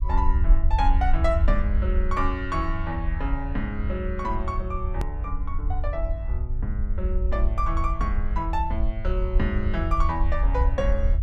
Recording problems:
rumble; below 62 Hz, SNR -3 dB
click at an edit; at 5 s

